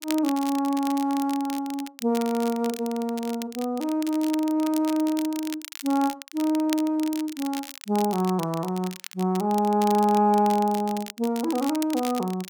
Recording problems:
crackle; vinyl, SNR 14 dB

